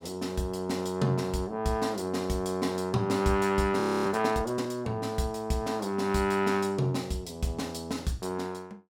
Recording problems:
frozen audio; at 4 s

